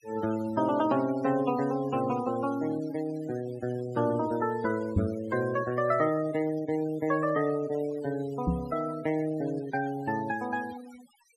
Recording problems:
noise reduction artefacts; signal-to-artefact ratio 17 dB
knock on the microphone; at 5 s and at 8.5 s; peak +7 dB vs average level

